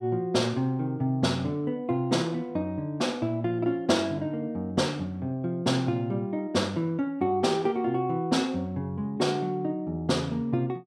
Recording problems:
none

